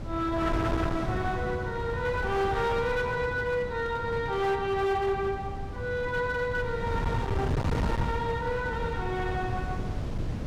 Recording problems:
distortion; hard clipping, signal-to-distortion ratio 11 dB
wind on the microphone; below 260 Hz, SNR 4 dB

